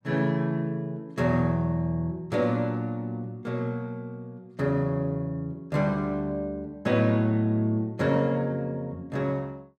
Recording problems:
none

